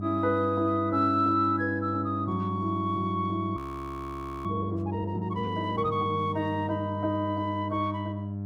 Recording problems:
hum; 50 Hz, harmonics up to 700 Hz, SNR 6 dB
audio freezing; at 3.5 s for 1 s

